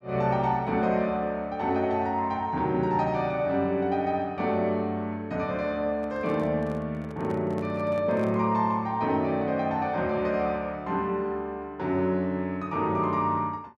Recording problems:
microphone handling noise; from 6 to 8.5 s; peak -11 dB vs average level

